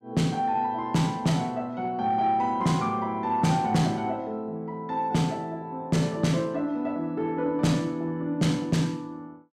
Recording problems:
distorted audio; soft clipping, signal-to-distortion ratio 12 dB

